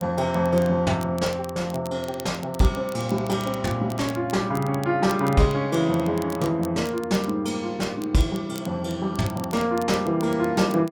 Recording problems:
crackle; vinyl, SNR 20 dB

